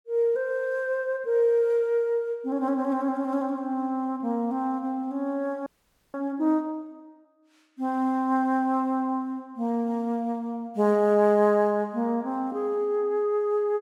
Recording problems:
frozen audio; at 5.5 s

